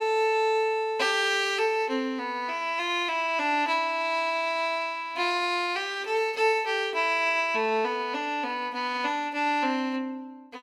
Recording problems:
none

